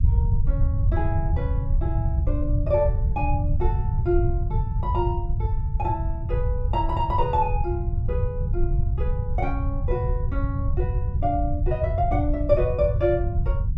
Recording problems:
low-frequency rumble; below 100 Hz, SNR -2 dB

